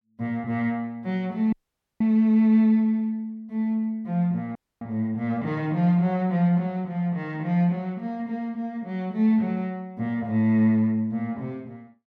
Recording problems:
audio cutting out; at 1.5 s and at 4.5 s

